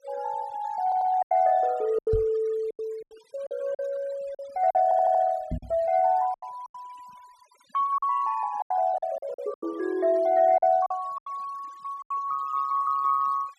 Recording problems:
denoising artefacts; signal-to-artefact ratio 25 dB
packet loss; 10% of the sound replaced, filled with silence
stutter; at 1 s and at 5 s
knock on the microphone; at 2 s and at 5.5 s; peak 0 dB vs average level

